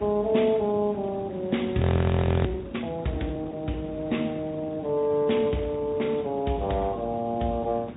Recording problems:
low-pass filter; nothing above 3.8 kHz
lossy codec; Speex, log-spectral distance 3 dB
hum; 50 Hz, harmonics up to 350 Hz, SNR 23 dB
hiss; SNR 14 dB
audio freezing; at 2 s for 0.5 s

